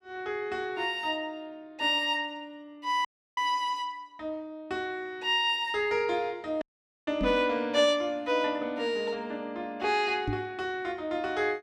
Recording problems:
dropout; at 3 s and at 6.5 s
knock on the microphone; at 7 s and at 10 s; peak +1 dB vs average level

